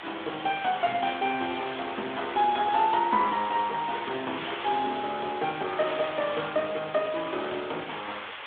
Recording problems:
telephone audio; 300 Hz to 3.6 kHz, Speex
background hiss; SNR 9 dB

